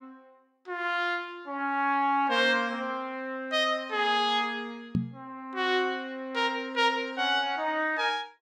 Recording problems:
microphone thump; at 5 s; peak +4 dB vs average level

